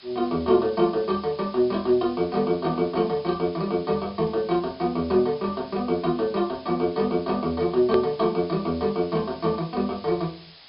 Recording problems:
low-pass filter; nothing above 5.5 kHz
background hiss; SNR 22 dB
hard cut with a click; at 8 s

